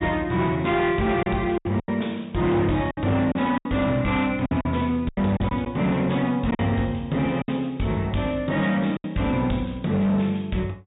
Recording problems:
low-pass filter; nothing above 4 kHz
distorted audio; hard clipping, signal-to-distortion ratio 12 dB
lost packets; 7% of the sound replaced, filled with silence

